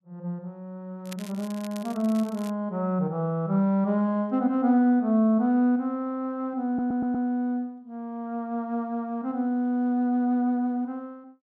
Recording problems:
crackle; from 1 to 2.5 s; loose cable, SNR 21 dB
audio stuttering; at 6.5 s

